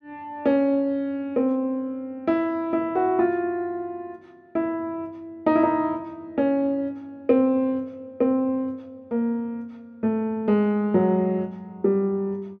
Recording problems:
none

